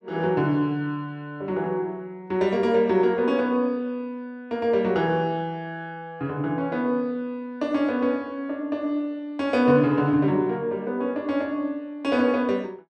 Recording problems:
none

